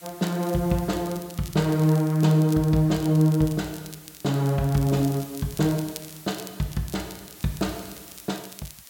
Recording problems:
hiss; slope +2 dB per octave, SNR 20 dB
crackling; vinyl, SNR 20 dB

